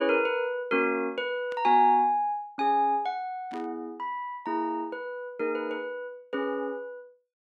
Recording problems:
burst of static; at 1.5 s and at 3.5 s; peak -14 dB vs average level

